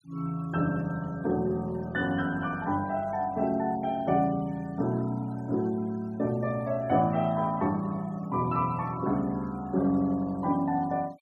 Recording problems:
denoising artefacts; signal-to-artefact ratio 26 dB

